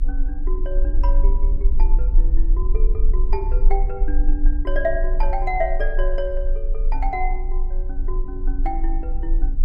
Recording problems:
low-frequency rumble; below 34 Hz, strongest tone 24 Hz, SNR -6 dB
wind on the microphone; below 98 Hz, SNR 7 dB

